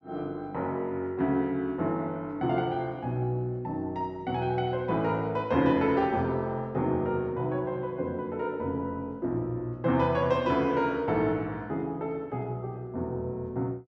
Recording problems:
none

